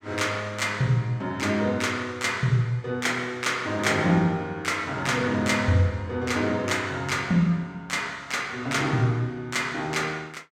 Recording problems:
none

